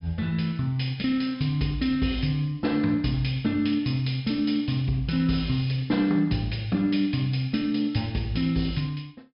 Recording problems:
low-pass filter; nothing above 5.5 kHz

